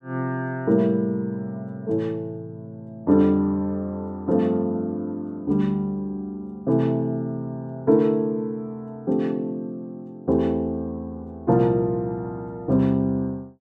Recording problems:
none

